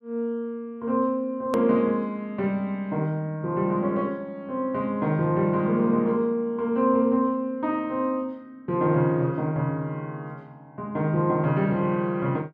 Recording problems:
hard cut with a click; at 1.5 s

